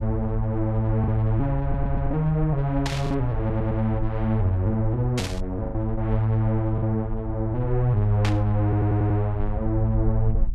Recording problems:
low-frequency rumble; below 60 Hz, SNR 9 dB
lost packets; 3% of the sound replaced, filled with the last packet
audio stuttering; at 1.5 s, at 3.5 s and at 8.5 s
burst of static; at 3 s, at 5 s and at 8.5 s; peak -1 dB vs average level

